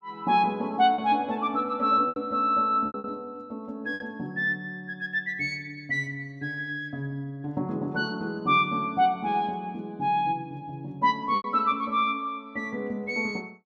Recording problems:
packet loss; 3% of the sound replaced, filled with repeated pitch periods

